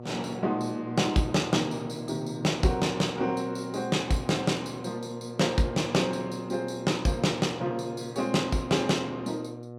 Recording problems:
hum; 60 Hz, harmonics up to 1.3 kHz, SNR 13 dB

